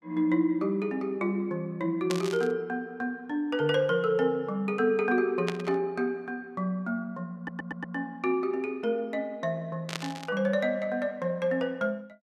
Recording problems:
burst of static; at 2 s, at 5.5 s and at 10 s; peak 0 dB vs average level
audio stuttering; at 7.5 s

